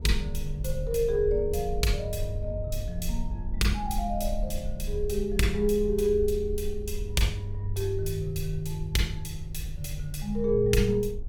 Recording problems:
low-frequency rumble; below 52 Hz, SNR 8 dB

